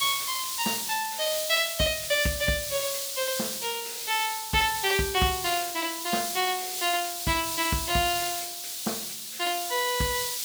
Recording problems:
background hiss; SNR 3 dB

